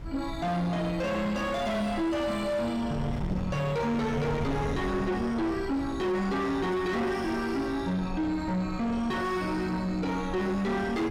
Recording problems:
distorted audio; soft clipping, signal-to-distortion ratio 6 dB
wind noise; below 270 Hz, SNR 10 dB

